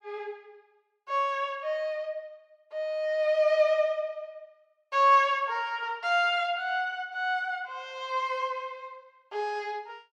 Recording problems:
none

